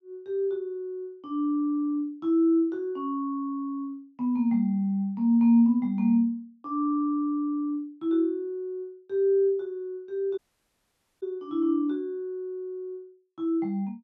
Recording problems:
dropout; at 10 s for 1 s

